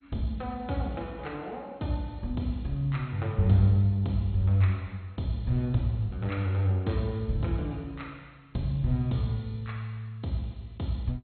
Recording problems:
lossy codec; MP2, log-spectral distance 2 dB, nothing above 4.2 kHz

